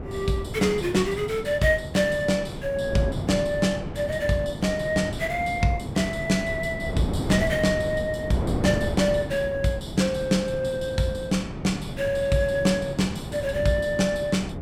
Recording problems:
wind on the microphone; below 370 Hz, SNR 8 dB

